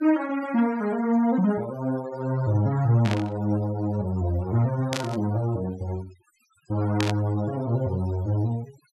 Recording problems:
noise reduction artefacts; signal-to-artefact ratio 18 dB
burst of static; at 3 s, at 5 s and at 7 s; peak 0 dB vs average level

